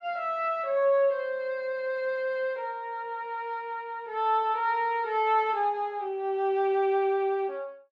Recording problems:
none

